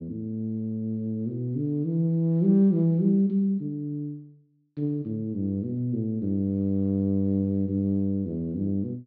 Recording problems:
low-pass filter; nothing above 6 kHz

